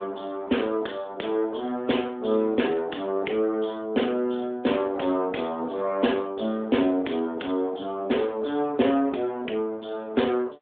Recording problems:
phone line; 220 Hz to 3.6 kHz, AMR-NB

